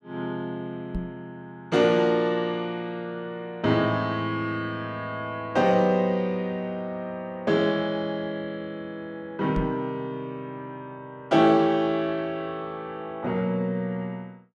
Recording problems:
knock on the microphone; at 1 s and at 9.5 s; peak 0 dB vs average level

